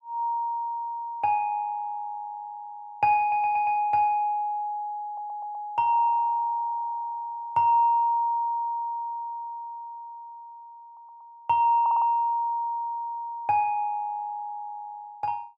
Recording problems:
audio stuttering; 4 times, first at 3 s

